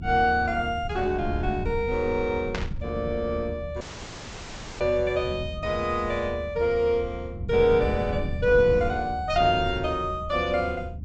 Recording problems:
treble cut off; nothing above 8 kHz
rumble; below 130 Hz, SNR 10 dB
burst of static; at 2.5 s; peak -2 dB vs average level
dropout; at 4 s for 1 s

